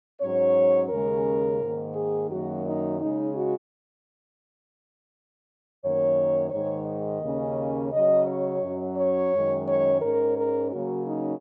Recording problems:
dropout; at 3.5 s for 2.5 s

